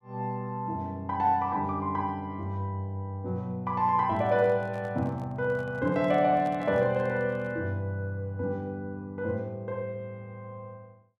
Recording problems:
handling noise; from 4 to 7.5 s; peak -10 dB vs average level

